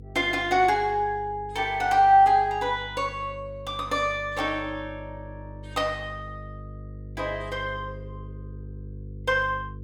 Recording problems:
electrical hum; 50 Hz, harmonics up to 500 Hz, SNR 17 dB

